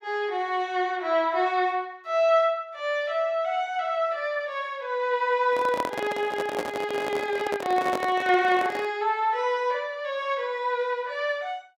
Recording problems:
handling noise; from 5.5 to 9 s; peak 0 dB vs average level

